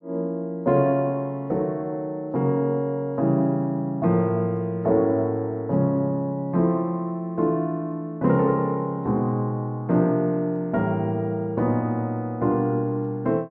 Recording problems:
none

